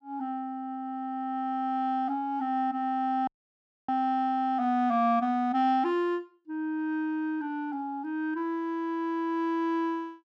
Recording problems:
dropout; at 3.5 s for 0.5 s

